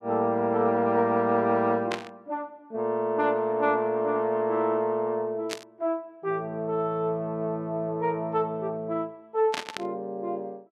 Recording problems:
burst of static; at 2 s, at 5.5 s and at 9.5 s; peak -1 dB vs average level

